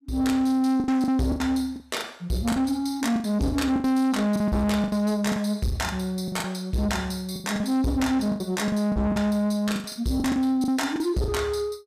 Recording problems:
distorted audio; soft clipping, signal-to-distortion ratio 10 dB
lost packets; 13% of the sound replaced, filled with the last packet

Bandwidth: 15 kHz